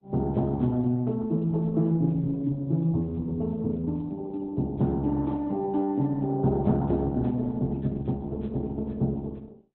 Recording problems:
lossy codec; Opus, log-spectral distance 2 dB, nothing above 4 kHz

